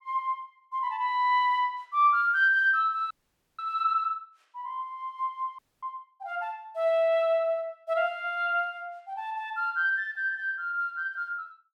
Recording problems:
frozen audio; at 3 s and at 5.5 s

